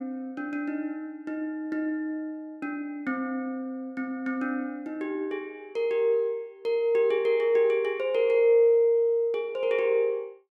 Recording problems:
none

